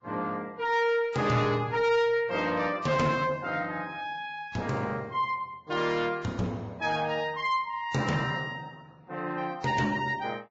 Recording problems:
lossy compression; Vorbis, log-spectral distance 3 dB, nothing above 7.3 kHz
distorted audio; soft clipping, signal-to-distortion ratio 11 dB

